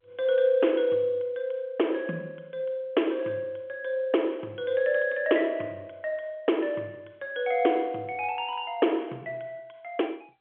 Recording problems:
phone line; 220 Hz to 3.3 kHz, G.711

